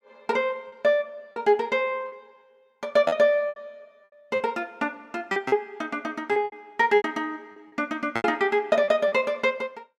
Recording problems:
packet loss; 9% of the sound replaced, filled with repeated pitch periods

